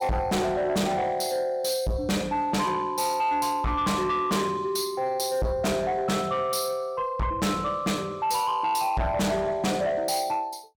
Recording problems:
distortion; soft clipping, signal-to-distortion ratio 6 dB

